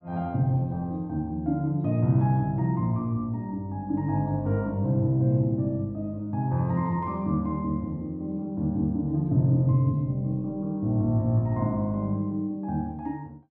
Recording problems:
none

